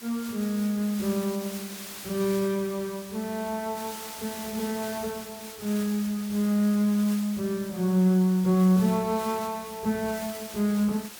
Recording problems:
background hiss; slope 0 dB per octave, SNR 13 dB

